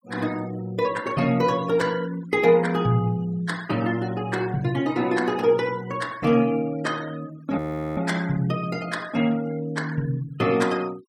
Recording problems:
noise reduction artefacts; signal-to-artefact ratio 21 dB
audio freezing; at 7.5 s

